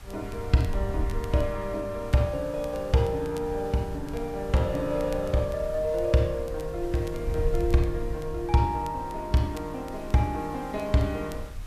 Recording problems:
hiss; SNR 22 dB
wind on the microphone; below 74 Hz, SNR 11 dB
crackle; vinyl, SNR 26 dB

